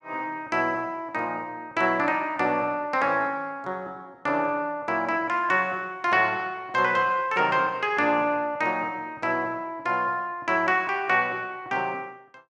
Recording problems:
none

